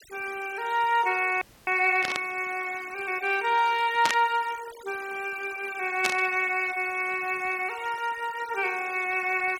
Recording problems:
denoising artefacts; signal-to-artefact ratio 19 dB
frozen audio; at 1.5 s
burst of static; at 2 s, at 4 s and at 6 s; peak +4 dB vs average level

